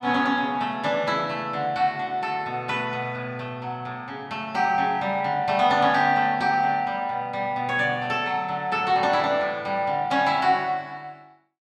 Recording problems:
none

